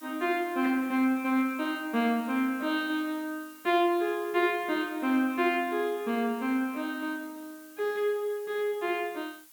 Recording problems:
hiss; slope +2 dB per octave, SNR 22 dB

